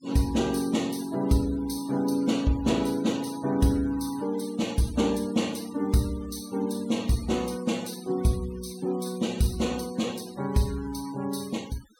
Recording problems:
denoising artefacts; signal-to-artefact ratio 20 dB

